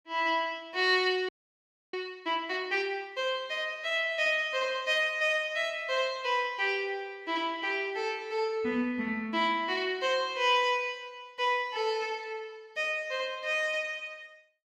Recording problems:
audio freezing; at 1.5 s for 0.5 s

